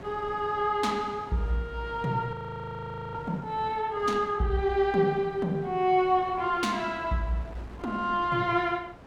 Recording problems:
wind noise; below 800 Hz, SNR 18 dB
audio freezing; at 2.5 s for 1 s

